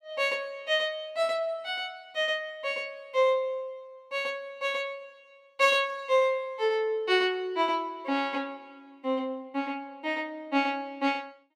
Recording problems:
none

